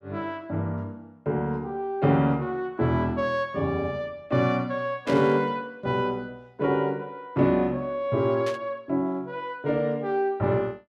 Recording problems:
static burst; at 5 s and at 8.5 s; peak -7 dB vs average level

